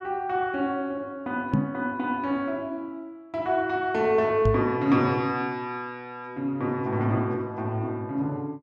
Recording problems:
microphone thump; at 1.5 s and at 4.5 s; peak +8 dB vs average level

